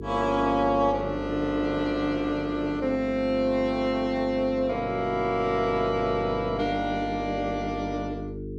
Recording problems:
electrical hum; 50 Hz, harmonics up to 450 Hz, SNR 11 dB

